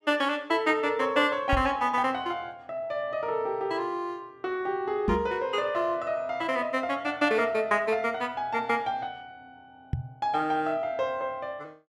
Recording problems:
knock on the microphone; at 1.5 s, at 5 s and at 10 s; peak +3 dB vs average level

